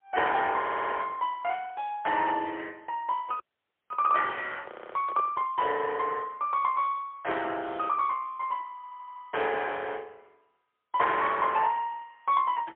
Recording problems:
phone line; 340 Hz to 3.4 kHz, AMR-NB, then MP3
audio stuttering; at 0.5 s, at 4.5 s and at 9 s
handling noise; from 3 to 5.5 s; peak -9 dB vs average level
audio freezing; at 3.5 s for 0.5 s

